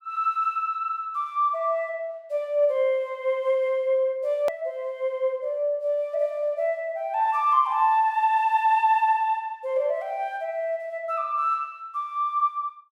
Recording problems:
hard cut with a click; at 4.5 s

